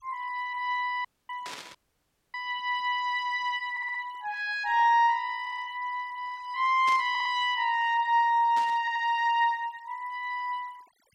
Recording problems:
noise reduction artefacts; signal-to-artefact ratio 27 dB
audio cutting out; at 1 s and at 2 s for 0.5 s
static burst; at 1.5 s, at 7 s and at 8.5 s; peak -8 dB vs average level
audio stuttering; 4 times, first at 3.5 s

